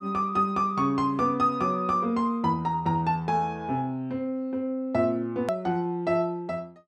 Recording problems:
hard cut with a click; at 5.5 s

